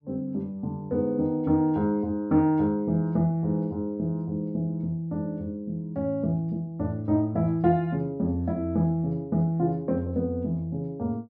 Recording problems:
none

